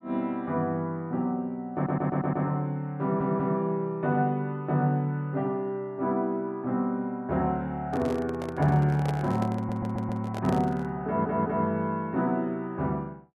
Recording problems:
stutter; 4 times, first at 2 s
handling noise; from 8 to 11 s; peak -2 dB vs average level

